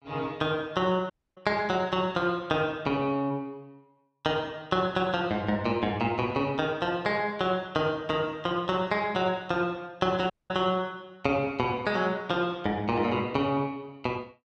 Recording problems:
audio cutting out; at 1 s and at 10 s

